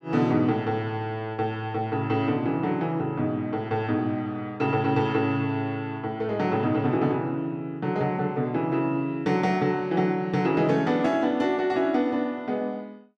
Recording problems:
none

